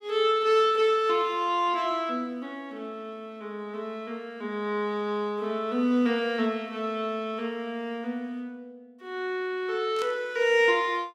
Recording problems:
static burst; at 10 s; peak -9 dB vs average level

